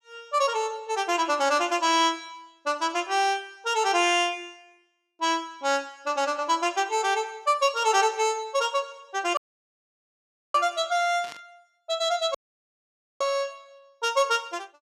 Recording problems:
audio cutting out; at 9.5 s for 1 s and at 12 s for 1 s
burst of static; at 11 s; peak -12 dB vs average level

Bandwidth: 14.5 kHz